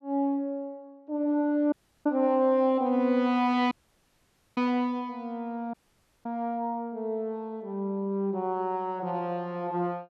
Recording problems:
audio cutting out; at 1.5 s, at 3.5 s for 1 s and at 5.5 s for 0.5 s

